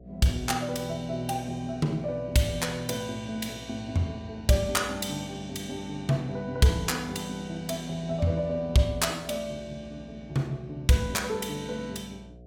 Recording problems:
hum; 60 Hz, harmonics up to 720 Hz, SNR 21 dB

